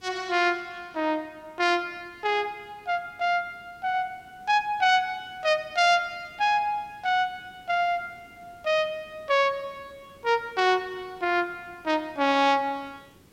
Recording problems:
hiss; SNR 30 dB

